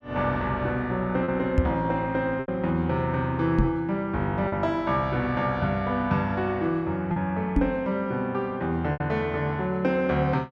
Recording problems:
lost packets; 3% of the sound replaced, filled with repeated pitch periods
microphone bump; at 1.5 s, at 3.5 s and at 7.5 s; peak +7 dB vs average level

